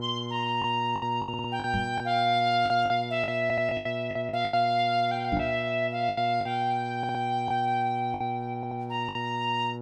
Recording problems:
mains hum; 60 Hz, harmonics up to 1.3 kHz, SNR 8 dB
lost packets; 9% of the sound replaced, filled with the last packet
stutter; 4 times, first at 1.5 s
microphone bump; at 1.5 s and at 5.5 s; peak +1 dB vs average level

